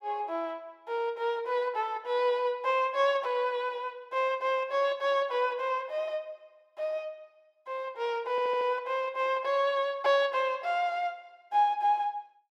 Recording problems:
stutter; at 8.5 s

